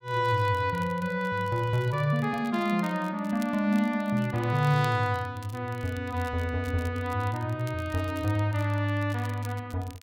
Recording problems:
crackle; vinyl, SNR 23 dB

